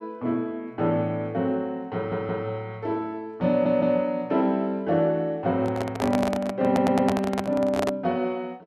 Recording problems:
audio stuttering; at 2 s, at 3.5 s and at 6.5 s
handling noise; from 5.5 to 8 s; peak +2 dB vs average level

